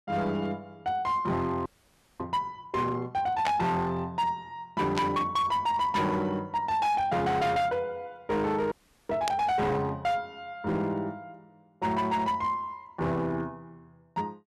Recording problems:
distorted audio; hard clipping, signal-to-distortion ratio 10 dB
frozen audio; at 1.5 s for 0.5 s and at 8.5 s
burst of static; at 3.5 s, at 5 s and at 9.5 s; peak +1 dB vs average level

